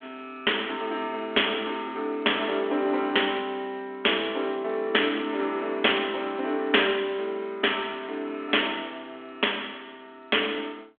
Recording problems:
telephone audio; 240 Hz to 3.5 kHz, G.726

